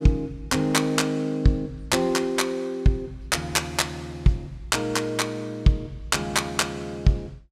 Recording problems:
none

